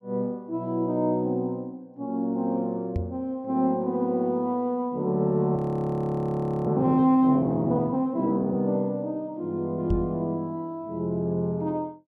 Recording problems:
knock on the microphone; at 3 s and at 10 s; peak +2 dB vs average level
audio freezing; at 5.5 s for 1 s

